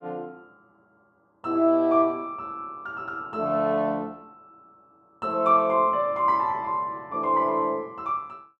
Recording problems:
none

